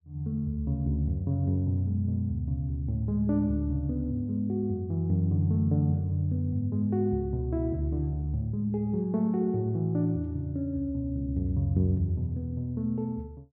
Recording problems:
none

